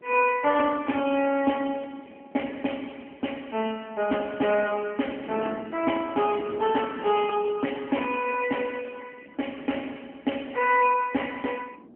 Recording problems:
telephone audio; 220 Hz to 3.1 kHz, AMR-NB
wind on the microphone; below 440 Hz, SNR 18 dB

